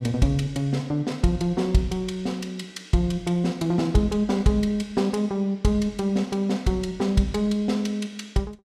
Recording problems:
none

